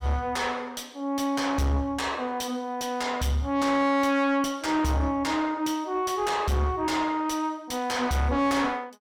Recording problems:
distorted audio; soft clipping, signal-to-distortion ratio 6 dB

